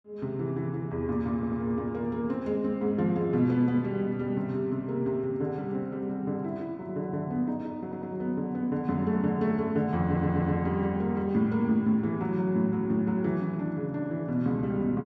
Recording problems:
stutter; at 1.5 s, at 8 s and at 10 s

